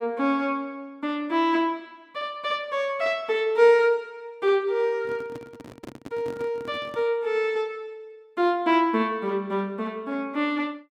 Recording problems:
microphone handling noise; from 5 to 7 s; peak -10 dB vs average level

